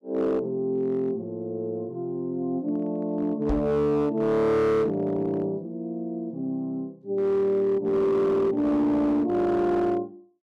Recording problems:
distortion; hard clipping, signal-to-distortion ratio 11 dB
microphone thump; at 3.5 s; peak +1 dB vs average level

